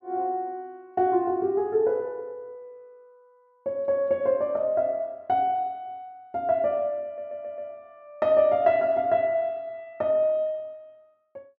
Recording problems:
stutter; at 7 s

